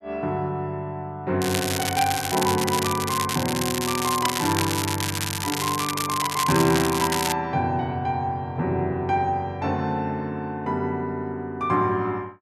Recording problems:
crackle; from 1.5 to 7.5 s; loose cable, SNR 3 dB

